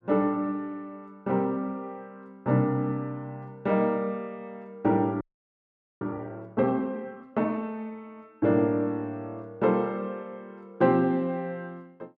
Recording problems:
audio freezing; at 5 s for 1 s

